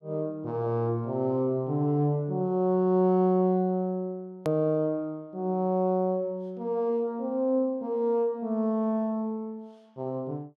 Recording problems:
hard cut with a click; at 4.5 s

